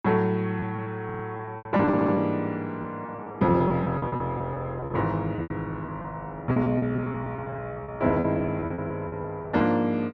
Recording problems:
lost packets; 16% of the sound replaced, filled with repeated pitch periods
audio stuttering; at 1 s and at 2 s

